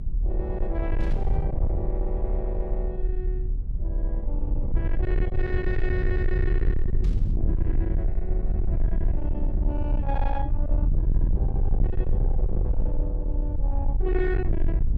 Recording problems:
distortion; soft clipping, signal-to-distortion ratio 7 dB
rumble; below 60 Hz, SNR -6 dB
burst of static; at 1 s and at 7 s; peak -11 dB vs average level

